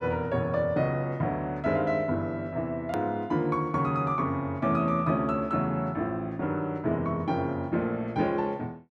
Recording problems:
click at an edit; at 3 s

